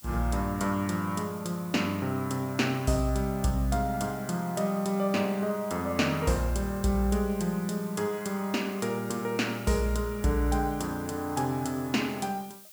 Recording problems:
background hiss; slope +3 dB per octave, SNR 18 dB

